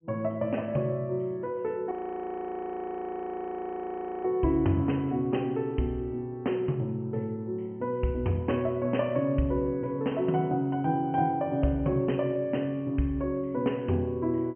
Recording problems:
low-pass filter; nothing above 3.1 kHz
frozen audio; at 2 s for 2.5 s

